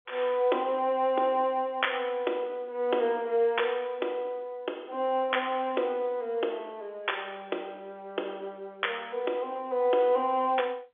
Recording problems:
phone line; 300 Hz to 3.5 kHz, G.711

